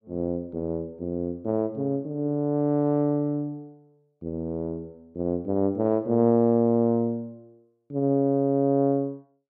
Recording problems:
none

